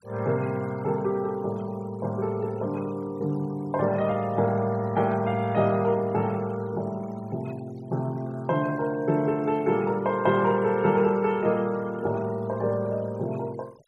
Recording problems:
denoising artefacts; signal-to-artefact ratio 25 dB

